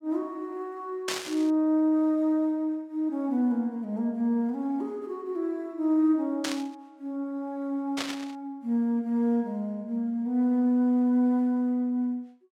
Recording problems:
burst of static; at 1 s, at 6.5 s and at 8 s; peak +1 dB vs average level

